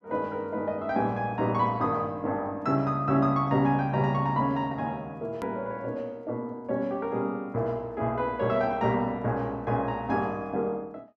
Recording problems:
edit click; at 5.5 s

